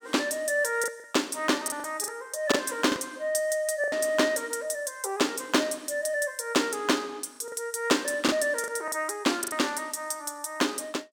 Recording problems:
lost packets; 6% of the sound replaced, filled with the last packet

